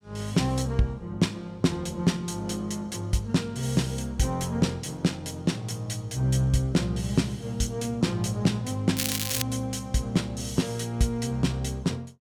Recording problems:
crackling; at 9 s; loose cable, SNR 2 dB

